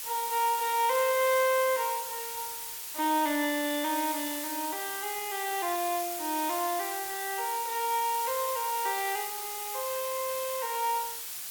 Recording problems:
hiss; slope +3 dB per octave, SNR 5 dB

